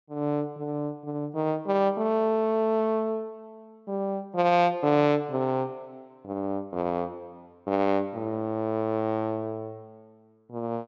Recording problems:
treble cut off; nothing above 8 kHz

